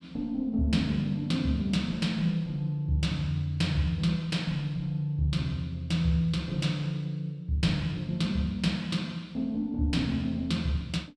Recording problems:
none

